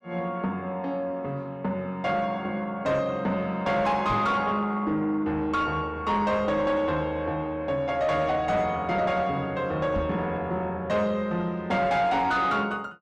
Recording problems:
distortion; soft clipping, signal-to-distortion ratio 11 dB
microphone bump; at 4 s and at 10 s; peak -1 dB vs average level

